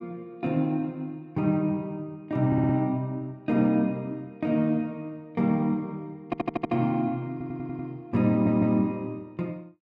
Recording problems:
stutter; 4 times, first at 2.5 s

